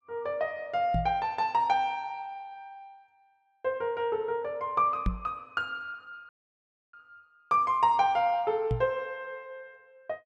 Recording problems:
microphone thump; at 1 s, at 5 s and at 8.5 s; peak +3 dB vs average level
audio cutting out; at 6.5 s for 0.5 s

